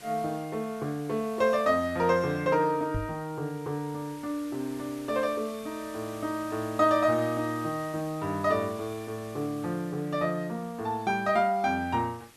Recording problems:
hiss; slope -1 dB per octave, SNR 20 dB
microphone bump; at 3 s; peak 0 dB vs average level

